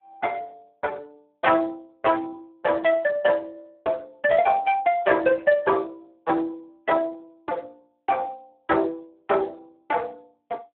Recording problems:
telephone audio; 340 Hz to 2.9 kHz, Speex

